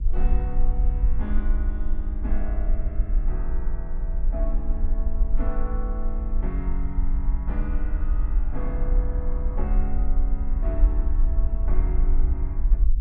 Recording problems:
low-frequency rumble; below 46 Hz, strongest tone 20 Hz, SNR -10 dB

